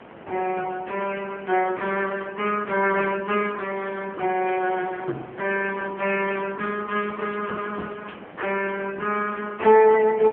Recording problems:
phone line; 280 Hz to 2.8 kHz, AMR-NB
hiss; SNR 18 dB

